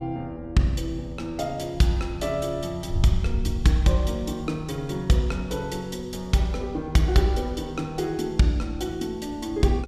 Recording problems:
wind on the microphone; below 92 Hz, SNR 11 dB

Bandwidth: 14.5 kHz